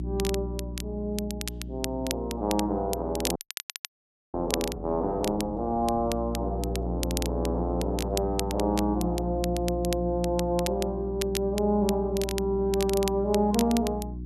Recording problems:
electrical hum; 60 Hz, harmonics up to 360 Hz, SNR 7 dB
crackle; vinyl, SNR 9 dB
frozen audio; at 3.5 s for 1 s

